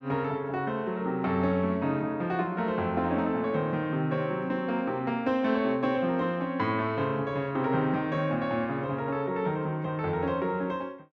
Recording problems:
none

